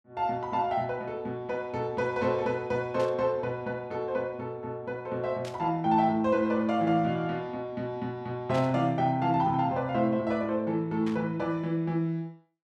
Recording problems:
static burst; 4 times, first at 3 s; peak -9 dB vs average level

